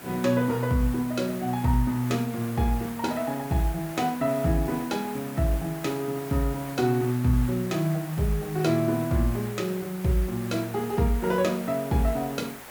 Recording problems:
background hiss; SNR 14 dB

